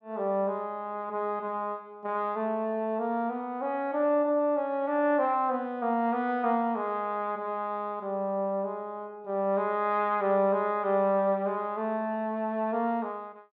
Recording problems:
none

